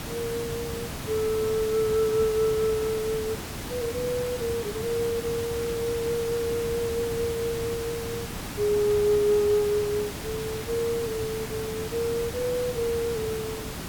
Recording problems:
hiss; slope -4 dB per octave, SNR 7 dB

